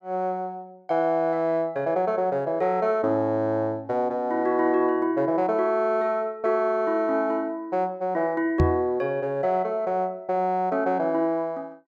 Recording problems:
microphone thump; at 8.5 s; peak +6 dB vs average level

